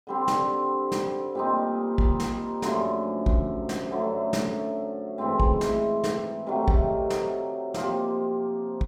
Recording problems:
none

